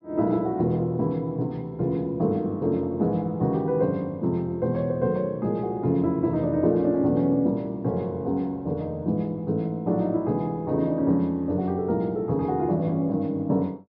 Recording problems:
treble cut off; nothing above 5.5 kHz

